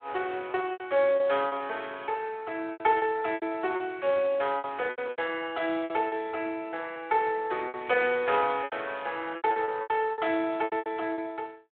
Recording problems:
phone line; 340 Hz to 3.4 kHz, Speex
packet loss; 13% of the sound replaced, filled with repeated pitch periods

